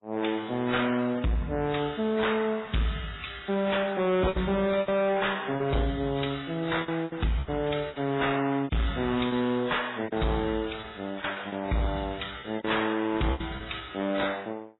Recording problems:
codec artefacts; MP3, then AAC, log-spectral distance 7 dB, nothing above 3.9 kHz
distortion; soft clipping, signal-to-distortion ratio 6 dB
packet loss; 8% of the sound replaced, filled with repeated pitch periods

